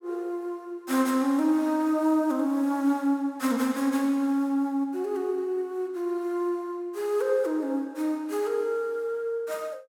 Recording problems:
none

